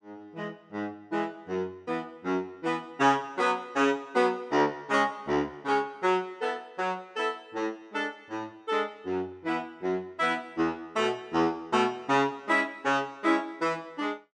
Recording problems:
none

